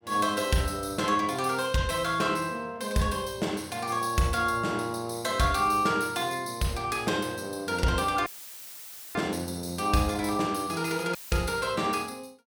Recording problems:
audio cutting out; at 8.5 s for 1 s and at 11 s; filled with static

